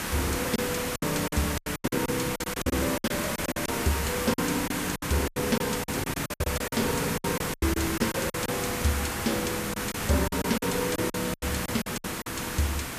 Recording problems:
background hiss; slope -3 dB per octave, SNR 1 dB
packet loss; 14% of the sound replaced, filled with silence

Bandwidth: 14.5 kHz